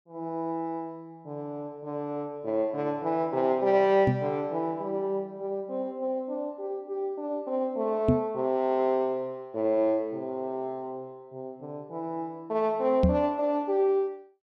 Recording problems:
knock on the microphone; at 4 s, at 8 s and at 13 s; peak +9 dB vs average level

